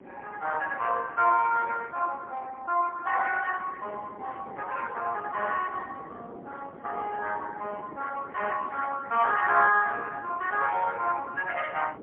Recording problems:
telephone audio; 370 Hz to 3.2 kHz, AMR-NB, then MP3
wind noise; below 540 Hz, SNR 18 dB

